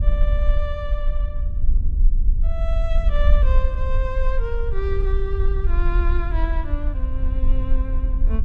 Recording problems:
low-frequency rumble; below 50 Hz, SNR -8 dB

